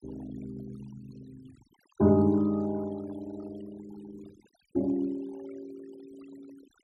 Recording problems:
denoising artefacts; signal-to-artefact ratio 24 dB

